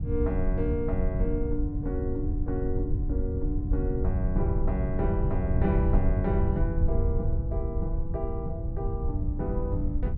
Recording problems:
rumble; below 94 Hz, SNR -3 dB

